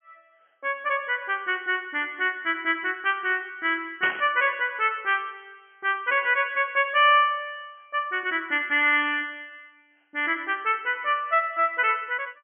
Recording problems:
treble missing; nothing above 3.2 kHz
burst of static; at 4 s; peak -3 dB vs average level

